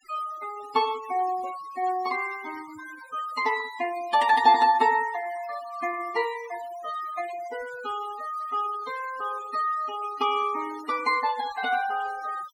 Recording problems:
noise reduction artefacts; signal-to-artefact ratio 16 dB

